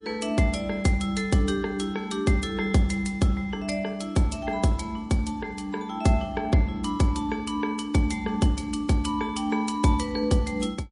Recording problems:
lossy codec; MP3, log-spectral distance 2 dB, nothing above 10.4 kHz

